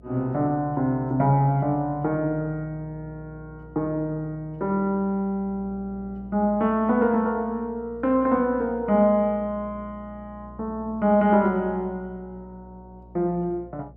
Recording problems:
hum; 60 Hz, harmonics up to 720 Hz, SNR 22 dB

